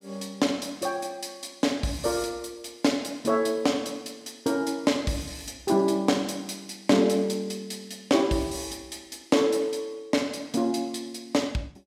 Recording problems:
none

